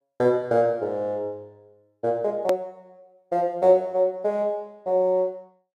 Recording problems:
hard cut with a click; at 2.5 s

